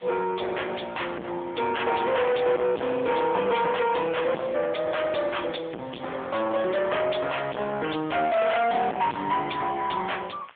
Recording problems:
telephone audio; 190 Hz to 3.5 kHz, AMR-NB
distorted audio; soft clipping, signal-to-distortion ratio 3 dB
background hiss; SNR 28 dB

